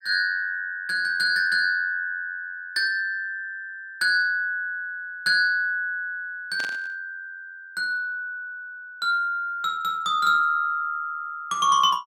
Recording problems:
burst of static; at 6.5 s; peak -7 dB vs average level

